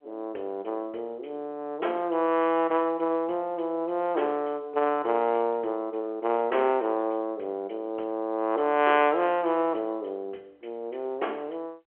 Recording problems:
phone line; 280 Hz to 3.2 kHz, G.711

